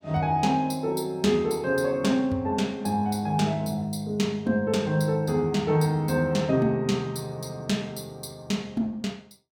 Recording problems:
none

